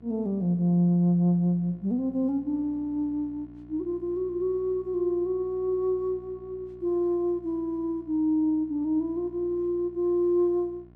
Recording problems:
hum; 60 Hz, harmonics up to 1.1 kHz, SNR 24 dB

